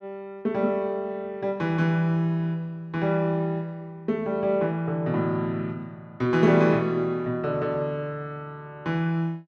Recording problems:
none

